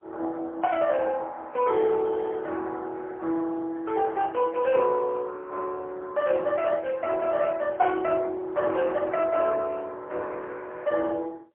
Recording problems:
phone line; 300 Hz to 2.2 kHz, AMR-NB, then MP3

